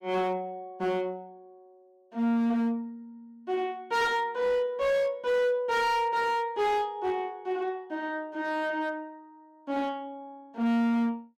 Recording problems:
distortion; hard clipping, signal-to-distortion ratio 11 dB

